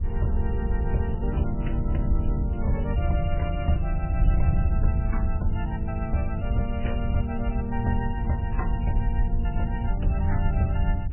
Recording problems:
lossy compression; MP3, log-spectral distance 2 dB, nothing above 2.4 kHz
wind noise; below 80 Hz, SNR -2 dB

